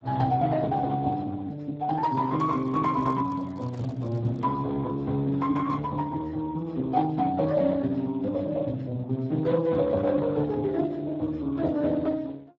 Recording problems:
codec artefacts; Speex, log-spectral distance 3 dB
handling noise; from 2.5 to 4.5 s; peak -13 dB vs average level

